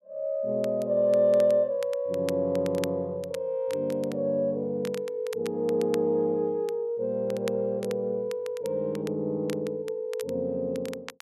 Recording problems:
crackle; vinyl, SNR 20 dB

